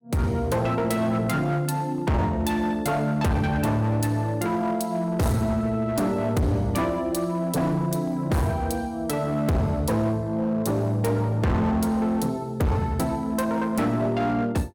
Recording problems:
distortion; hard clipping, uneven, signal-to-distortion ratio 7 dB

